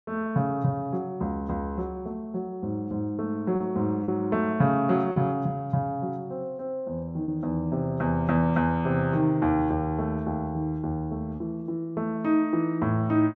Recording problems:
packet loss; 1.5% of the sound replaced, filled with repeated pitch periods

